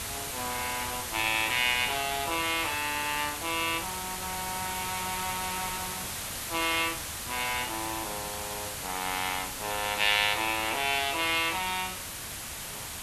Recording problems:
hiss; slope 0 dB per octave, SNR 5 dB

